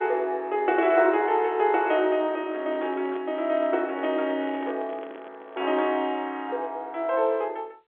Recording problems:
phone line; 300 Hz to 3.8 kHz, G.711
handling noise; from 2.5 to 6 s; peak -10 dB vs average level

